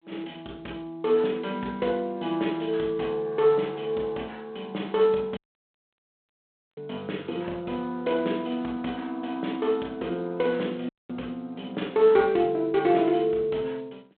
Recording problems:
telephone audio; 220 Hz to 3.6 kHz, G.726
audio cutting out; at 5.5 s for 1.5 s and at 11 s

